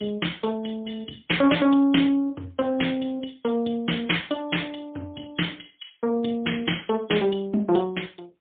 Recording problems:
telephone audio; 190 Hz to 3.4 kHz, AMR-NB, then MP3

